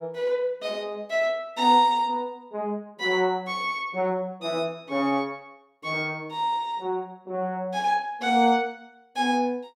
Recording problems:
none

